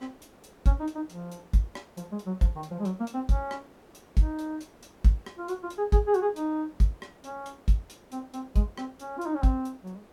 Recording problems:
hiss; slope -8 dB per octave, SNR 26 dB

